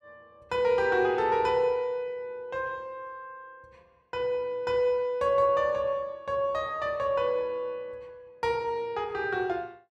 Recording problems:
none

